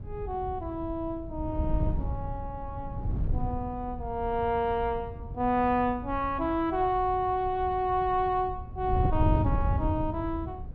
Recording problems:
wind noise; below 120 Hz, SNR 5 dB

